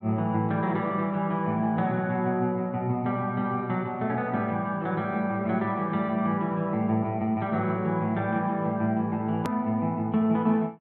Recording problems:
low-pass filter; nothing above 4.3 kHz
hard cut with a click; at 9.5 s

